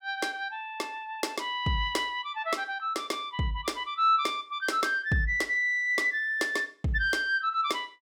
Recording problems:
none

